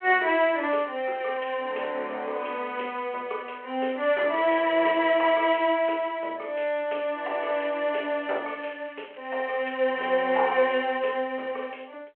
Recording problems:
telephone audio; 340 Hz to 3.2 kHz, G.726
crackling; at 4 s and from 8 to 10 s; loose cable, SNR 27 dB

